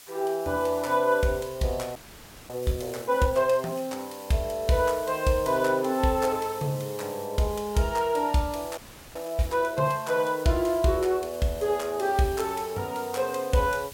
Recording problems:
hiss; slope +1 dB per octave, SNR 18 dB
audio freezing; at 2 s for 0.5 s and at 9 s

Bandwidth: 16.5 kHz